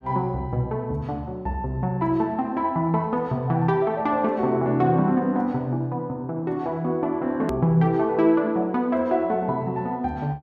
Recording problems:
edit click; at 7.5 s

